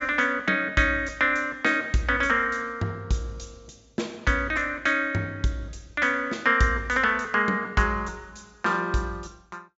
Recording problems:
low-pass filter; nothing above 8 kHz

